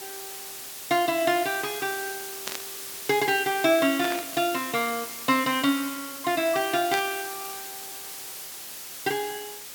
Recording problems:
hiss; slope 0 dB per octave, SNR 9 dB
burst of static; at 2.5 s, at 4 s and at 7 s; peak -2 dB vs average level

